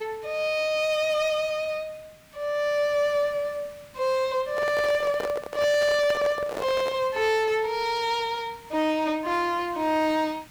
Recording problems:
distorted audio; hard clipping, uneven, signal-to-distortion ratio 9 dB
background hiss; SNR 24 dB
microphone handling noise; from 4.5 to 7 s; peak -2 dB vs average level

